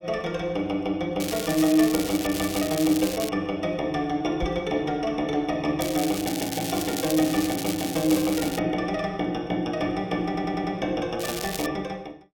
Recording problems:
crackle; from 1 to 3.5 s, from 6 to 8.5 s and at 11 s; loose cable, SNR 7 dB
knock on the microphone; at 4.5 s; peak -1 dB vs average level
stutter; at 10 s

